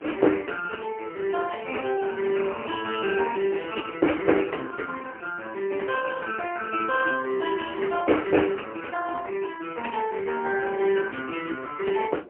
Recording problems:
telephone audio; 300 Hz to 2.9 kHz, AMR-NB, then MP3
wind noise; below 560 Hz, SNR 20 dB

